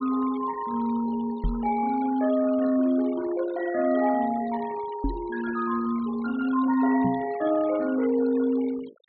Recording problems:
treble missing; nothing above 4.3 kHz
denoising artefacts; signal-to-artefact ratio 20 dB
knock on the microphone; at 1.5 s, at 5 s and at 7 s; peak +1 dB vs average level

